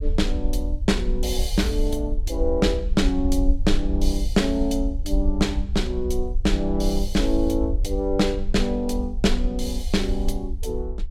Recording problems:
rumble; below 54 Hz, SNR 3 dB

